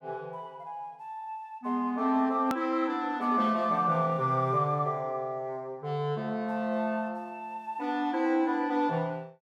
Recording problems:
edit click; at 2.5 s

